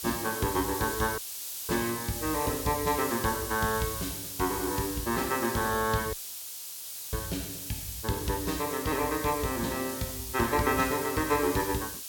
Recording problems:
hiss; SNR 5 dB
audio cutting out; at 1 s for 0.5 s and at 6 s for 1 s

